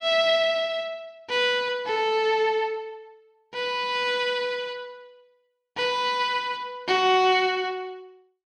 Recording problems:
none

